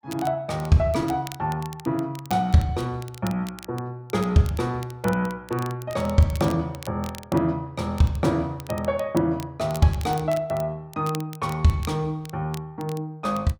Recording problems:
crackle; vinyl, SNR 19 dB

